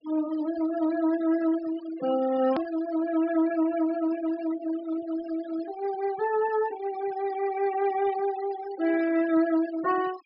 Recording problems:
low-pass filter; nothing above 5.2 kHz
denoising artefacts; signal-to-artefact ratio 15 dB
click at an edit; at 2.5 s

